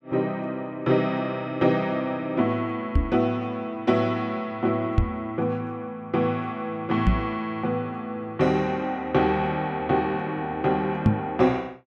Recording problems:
knock on the microphone; 4 times, first at 3 s; peak +10 dB vs average level

